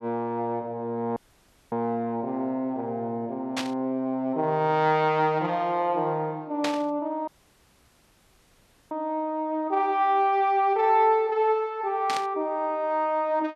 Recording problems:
dropout; at 1 s for 0.5 s and at 7.5 s for 1.5 s
static burst; at 3.5 s, at 6.5 s and at 12 s; peak 0 dB vs average level

